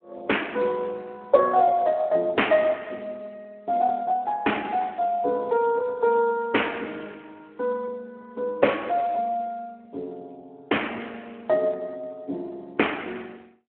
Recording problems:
phone line; 280 Hz to 3.2 kHz, Speex

